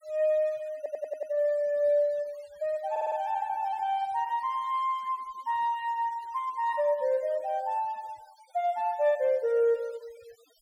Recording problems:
denoising artefacts; signal-to-artefact ratio 26 dB
stutter; at 1 s and at 3 s

